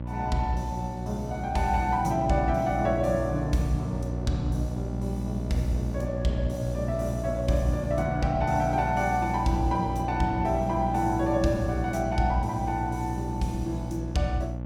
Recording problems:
hum; 60 Hz, harmonics up to 840 Hz, SNR 5 dB

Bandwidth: 17 kHz